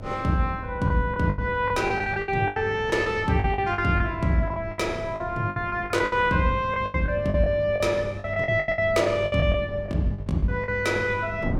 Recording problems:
hum; 50 Hz, harmonics up to 800 Hz, SNR 14 dB
wind on the microphone; below 260 Hz, SNR 15 dB
packet loss; 15% of the sound replaced, filled with the last packet

